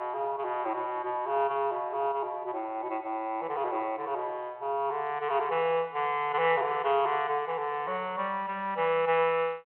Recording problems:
phone line; 280 Hz to 3.2 kHz, G.726

